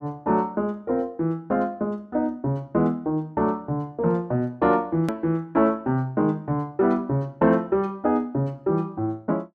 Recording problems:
click at an edit; at 5 s

